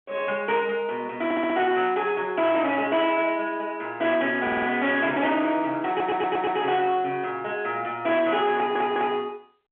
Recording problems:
telephone audio; 260 Hz to 3.3 kHz, G.711
distorted audio; soft clipping, signal-to-distortion ratio 12 dB
audio stuttering; 4 times, first at 1 s

